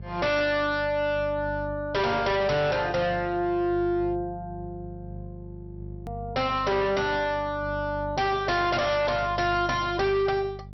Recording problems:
treble cut off; nothing above 5.7 kHz
distorted audio; hard clipping, signal-to-distortion ratio 7 dB
hum; 50 Hz, harmonics up to 450 Hz, SNR 15 dB
click at an edit; at 6 s

